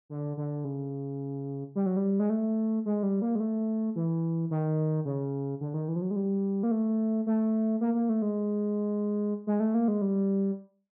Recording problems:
none

